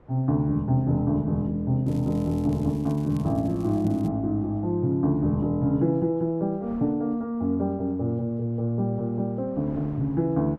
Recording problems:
wind on the microphone; below 610 Hz, SNR 25 dB
crackling; from 2 to 4 s; loose cable, SNR 28 dB

